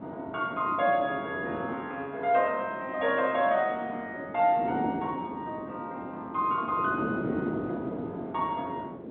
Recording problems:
phone line; 240 Hz to 3.7 kHz, G.711
wind on the microphone; below 430 Hz, SNR 8 dB

